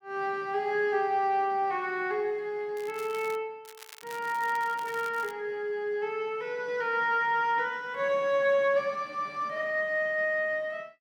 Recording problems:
crackle; at 3 s and from 3.5 to 5.5 s; loose cable, SNR 19 dB

